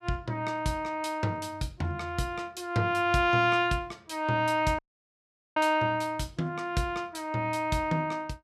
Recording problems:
audio cutting out; at 5 s for 1 s

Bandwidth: 14.5 kHz